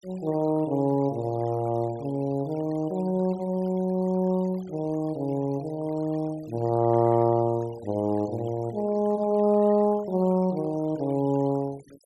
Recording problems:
denoising artefacts; signal-to-artefact ratio 24 dB

